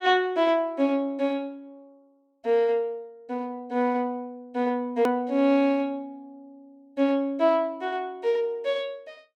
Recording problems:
click at an edit; at 5 s

